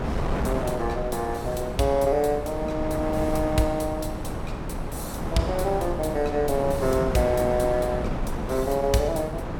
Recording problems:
wind noise; below 570 Hz, SNR 5 dB

